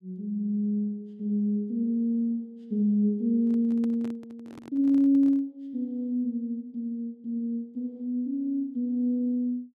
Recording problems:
microphone handling noise; from 3.5 to 5.5 s; peak -11 dB vs average level

